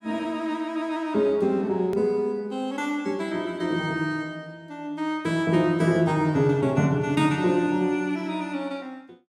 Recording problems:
edit click; at 2 s

